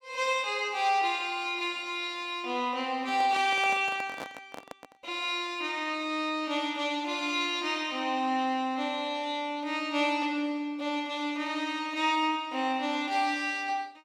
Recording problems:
microphone handling noise; from 3 to 5 s; peak -6 dB vs average level

